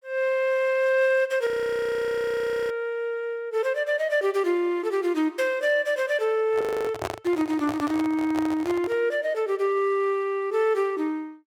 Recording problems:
frozen audio; at 1.5 s for 1 s and at 6.5 s
handling noise; from 6.5 to 9 s; peak -1 dB vs average level

